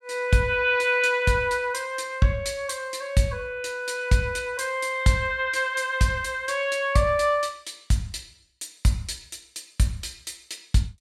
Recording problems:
none

